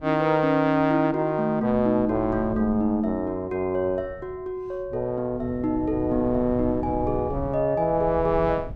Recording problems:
wind noise; below 170 Hz, SNR 15 dB

